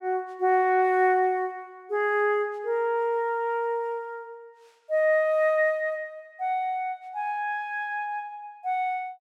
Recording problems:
none

